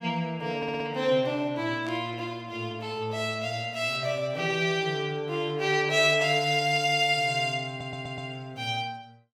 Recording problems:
audio stuttering; at 0.5 s and at 7.5 s
static burst; at 2 s and at 7 s; peak -14 dB vs average level

